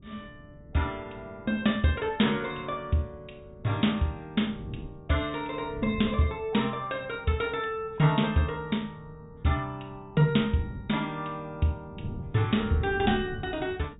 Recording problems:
treble cut off; nothing above 4 kHz
wind noise; below 200 Hz, SNR 15 dB

